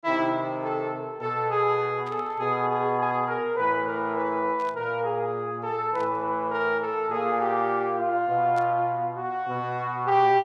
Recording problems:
static burst; 4 times, first at 2 s; peak -15 dB vs average level

